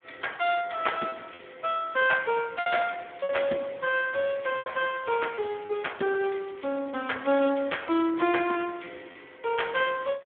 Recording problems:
phone line; 240 Hz to 3.4 kHz, Speex
packet loss; 4% of the sound replaced, filled with repeated pitch periods
crackle; from 4 to 7 s; loose cable, SNR 27 dB

